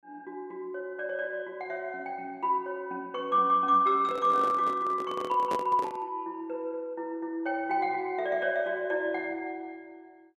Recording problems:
microphone handling noise; from 4 to 6 s; peak -1 dB vs average level

